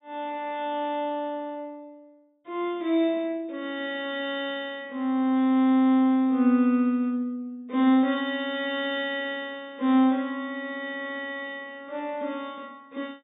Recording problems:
low-pass filter; nothing above 4 kHz

